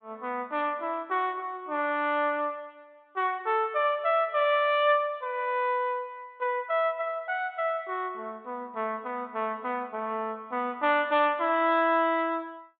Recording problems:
treble missing; nothing above 4 kHz

